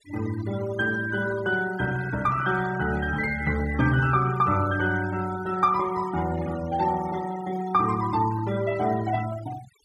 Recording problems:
denoising artefacts; signal-to-artefact ratio 15 dB

